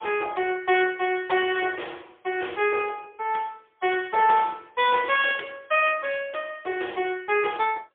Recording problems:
telephone audio; 300 Hz to 3.5 kHz, AMR-NB, then MP3

